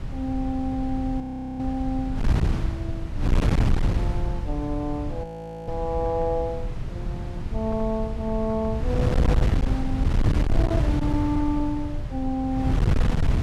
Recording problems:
distorted audio; hard clipping, signal-to-distortion ratio 11 dB
wind noise; below 130 Hz, SNR -2 dB
frozen audio; at 1 s and at 5 s

